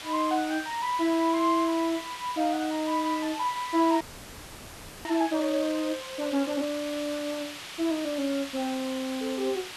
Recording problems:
background hiss; SNR 10 dB
frozen audio; at 4 s for 1 s

